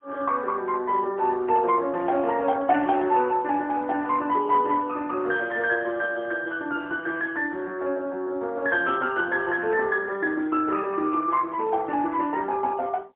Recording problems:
telephone audio; 300 Hz to 3.3 kHz, AMR-NB, then MP3

